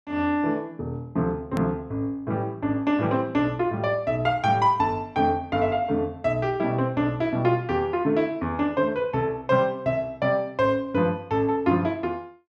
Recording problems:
click at an edit; at 1.5 s

